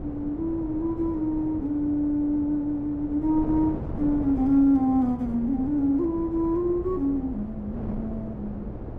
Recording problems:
wind on the microphone; below 350 Hz, SNR 11 dB

